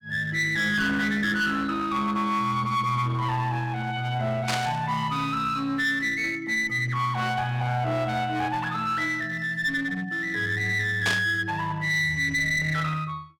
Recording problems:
distortion; hard clipping, uneven, signal-to-distortion ratio 9 dB
static burst; at 4.5 s and at 11 s; peak +2 dB vs average level

